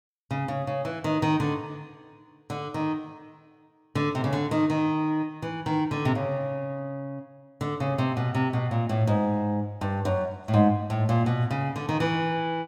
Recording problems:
none

